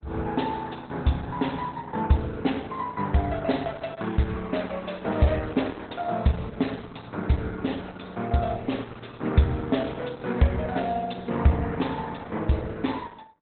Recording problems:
lossy compression; Opus, log-spectral distance 5 dB, nothing above 4 kHz

